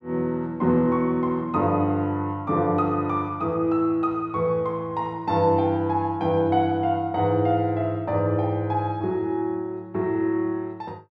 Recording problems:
none

